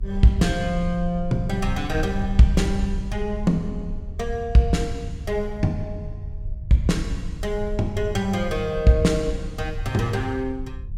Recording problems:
hum; 50 Hz, harmonics up to 400 Hz, SNR 20 dB
low-frequency rumble; below 66 Hz, SNR 10 dB

